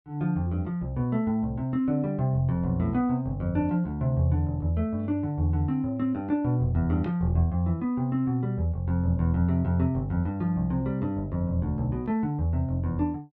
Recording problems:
none

